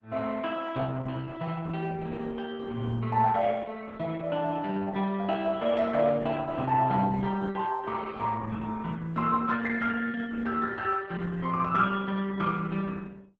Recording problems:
lossy compression; Opus, log-spectral distance 4 dB

